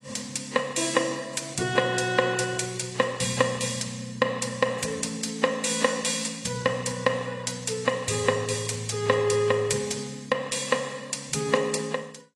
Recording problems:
codec artefacts; AAC, log-spectral distance 5 dB

